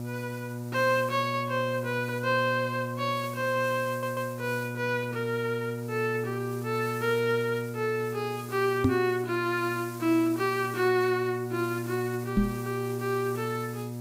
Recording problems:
electrical hum; 60 Hz, harmonics up to 960 Hz, SNR 8 dB
background hiss; slope 0 dB per octave, SNR 19 dB
stutter; at 4 s
microphone thump; at 9 s and at 12 s; peak +8 dB vs average level

